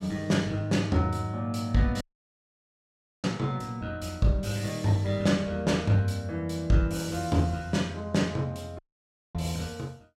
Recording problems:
audio cutting out; at 2 s for 1 s and at 9 s for 0.5 s

